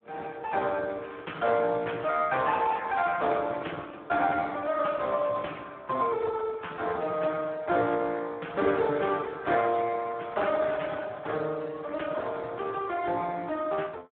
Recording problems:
telephone audio; 220 Hz to 3.5 kHz, Speex
crackle; from 1 to 3 s; loose cable, SNR 27 dB

